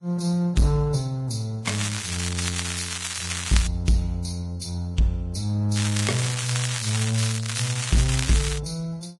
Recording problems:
lossy codec; Vorbis, log-spectral distance 7 dB, nothing above 10.4 kHz
distorted audio; hard clipping, signal-to-distortion ratio 11 dB
crackle; from 1.5 to 3.5 s and from 6 to 8.5 s; loose cable, SNR 3 dB

